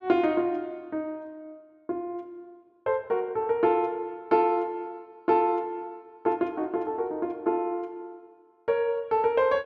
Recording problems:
none

